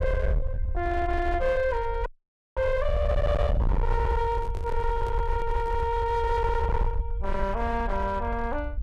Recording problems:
distortion; hard clipping, signal-to-distortion ratio 6 dB
low-frequency rumble; below 74 Hz, SNR 3 dB
audio freezing; at 2 s for 0.5 s
handling noise; from 4 to 6 s; peak -8 dB vs average level

